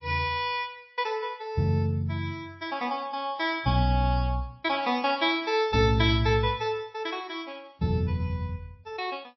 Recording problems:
lossy codec; MP3, log-spectral distance 2 dB, nothing above 5.7 kHz

